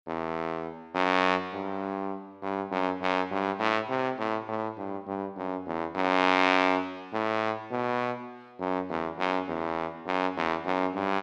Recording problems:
none

